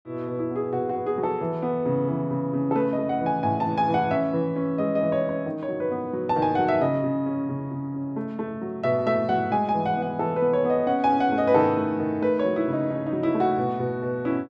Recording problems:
none

